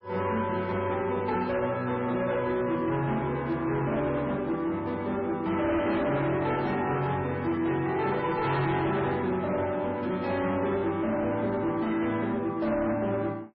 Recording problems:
lossy codec; MP3, log-spectral distance 2 dB, nothing above 4.6 kHz
distorted audio; hard clipping, signal-to-distortion ratio 11 dB

